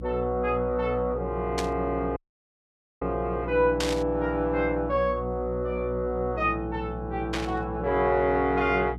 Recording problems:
hum; 60 Hz, harmonics up to 360 Hz, SNR 10 dB
burst of static; at 1.5 s, at 4 s and at 7.5 s; peak +1 dB vs average level
audio cutting out; at 2 s for 1 s

